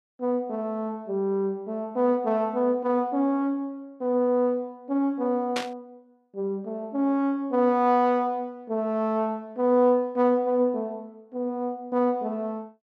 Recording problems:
burst of static; at 5.5 s; peak -1 dB vs average level

